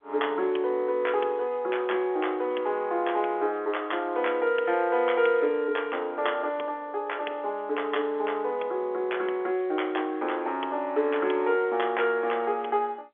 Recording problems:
phone line; 300 Hz to 3.4 kHz, G.711

